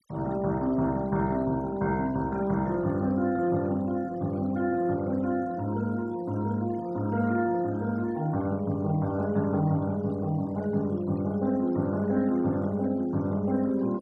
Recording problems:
denoising artefacts; signal-to-artefact ratio 22 dB

